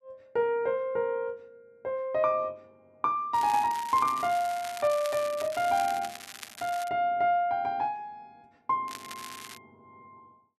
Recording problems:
crackle; from 3.5 to 7 s and at 9 s; loose cable, SNR 14 dB

